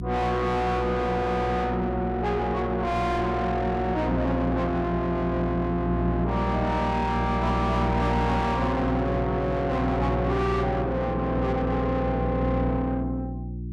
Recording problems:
distorted audio; soft clipping, signal-to-distortion ratio 7 dB
hum; 60 Hz, harmonics up to 360 Hz, SNR 4 dB

